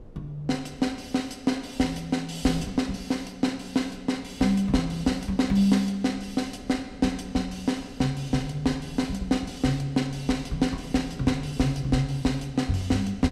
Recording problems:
wind on the microphone; below 310 Hz, SNR 21 dB

